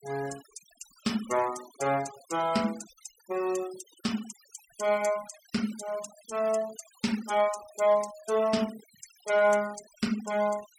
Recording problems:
noise reduction artefacts; signal-to-artefact ratio 17 dB

